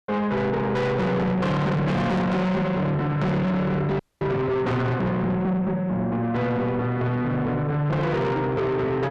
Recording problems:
distorted audio; soft clipping, signal-to-distortion ratio 6 dB
audio freezing; at 4 s

